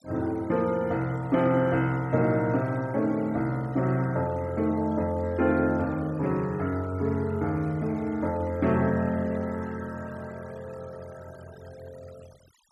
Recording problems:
noise reduction artefacts; signal-to-artefact ratio 24 dB

